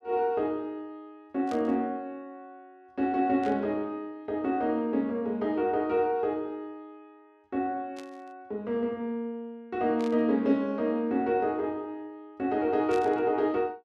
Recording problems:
static burst; 5 times, first at 1.5 s; peak -12 dB vs average level

